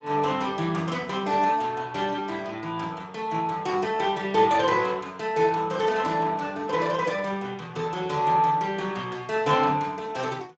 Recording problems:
codec artefacts; Speex, log-spectral distance 4 dB, nothing above 7.3 kHz

